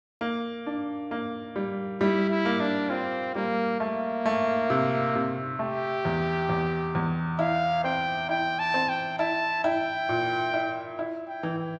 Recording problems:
none

